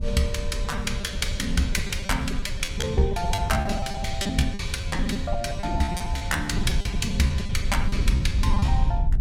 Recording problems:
rumble; below 82 Hz, SNR 2 dB
wind noise; below 170 Hz, SNR 11 dB
packet loss; 17% of the sound replaced, filled with repeated pitch periods

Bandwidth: 16 kHz